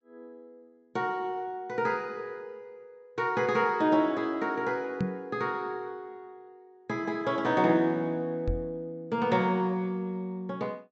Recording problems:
treble missing; nothing above 7.8 kHz
microphone bump; at 5 s and at 8.5 s; peak +3 dB vs average level

